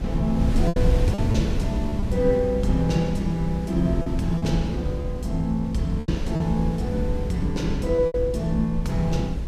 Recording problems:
rumble; below 72 Hz, SNR 7 dB
wind on the microphone; below 150 Hz, SNR 5 dB
packet loss; 5% of the sound replaced, filled with repeated pitch periods

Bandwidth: 15 kHz